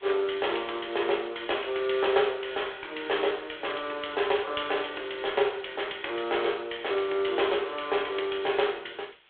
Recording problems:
telephone audio; 300 Hz to 3.5 kHz, G.726
hiss; SNR 26 dB

